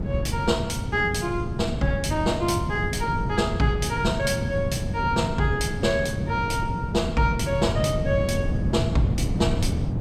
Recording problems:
wind noise; below 200 Hz, SNR 3 dB

